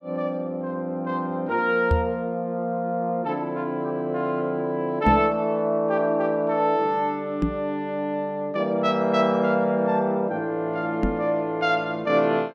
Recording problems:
knock on the microphone; 4 times, first at 2 s; peak +5 dB vs average level

